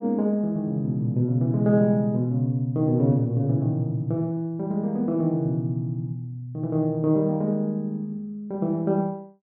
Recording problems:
none

